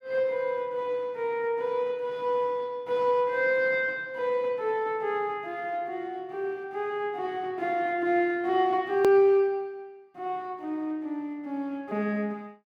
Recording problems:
hard cut with a click; at 9 s

